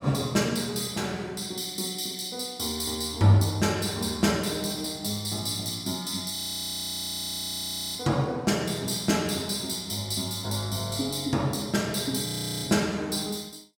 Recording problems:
frozen audio; at 6.5 s for 1.5 s and at 12 s

